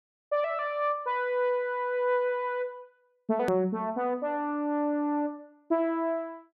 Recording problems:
hard cut with a click; at 3.5 s

